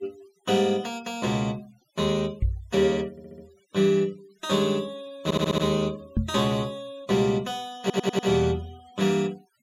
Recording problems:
noise reduction artefacts; signal-to-artefact ratio 24 dB
knock on the microphone; at 2.5 s and at 6 s; peak +4 dB vs average level
audio stuttering; at 3 s, at 5 s and at 8 s

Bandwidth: 16 kHz